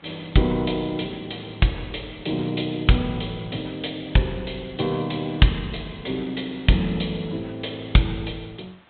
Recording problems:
low-pass filter; nothing above 4 kHz
hiss; SNR 27 dB

